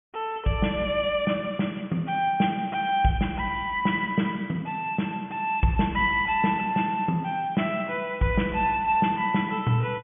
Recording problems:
low-pass filter; nothing above 3.4 kHz

